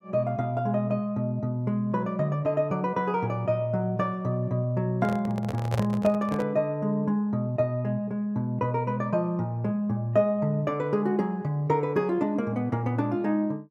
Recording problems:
handling noise; from 5 to 6.5 s; peak -1 dB vs average level

